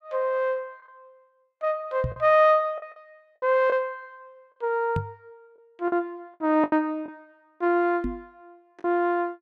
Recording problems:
lost packets; 6% of the sound replaced, filled with the last packet
knock on the microphone; at 2 s, at 5 s and at 8 s; peak 0 dB vs average level

